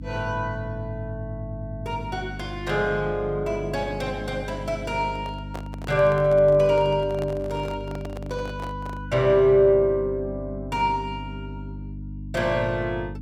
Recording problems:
electrical hum; 50 Hz, harmonics up to 300 Hz, SNR 12 dB
microphone handling noise; from 5 to 9 s; peak -9 dB vs average level

